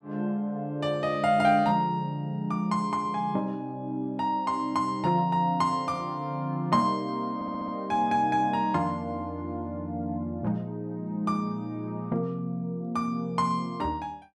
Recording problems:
audio stuttering; at 7.5 s

